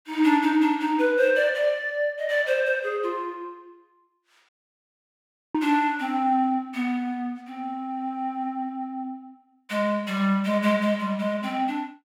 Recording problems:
dropout; at 4.5 s for 1 s

